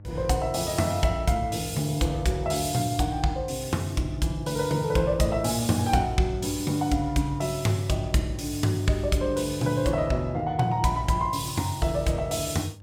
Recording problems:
hum; 50 Hz, harmonics up to 600 Hz, SNR 18 dB

